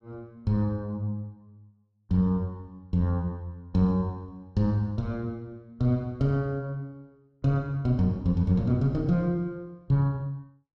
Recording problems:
none

